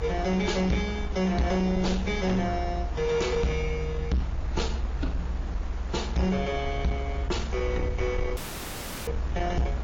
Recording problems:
lossy compression; AAC, then MP3, log-spectral distance 2 dB
distortion; soft clipping, signal-to-distortion ratio 7 dB
hiss; slope -6 dB per octave, SNR 14 dB
low-frequency rumble; below 66 Hz, SNR 5 dB
dropout; at 8.5 s for 0.5 s

